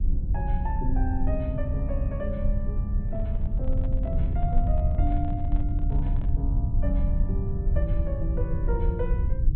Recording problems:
treble cut off; nothing above 4 kHz
rumble; below 78 Hz, SNR -6 dB
handling noise; from 3 to 6.5 s; peak -9 dB vs average level

